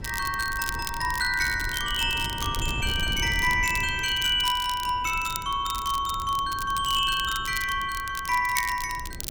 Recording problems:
wind on the microphone; below 150 Hz, SNR 13 dB
crackle; vinyl, SNR 12 dB

